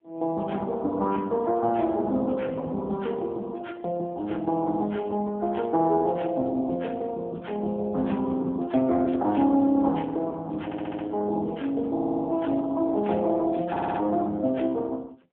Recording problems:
phone line; 190 Hz to 3.5 kHz, AMR-NB
static burst; at 9 s and at 14 s; peak -17 dB vs average level
audio stuttering; at 11 s, at 12 s and at 14 s

